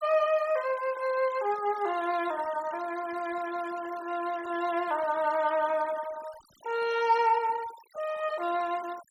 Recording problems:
denoising artefacts; signal-to-artefact ratio 19 dB

